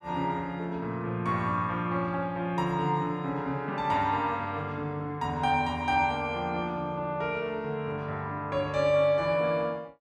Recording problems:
none

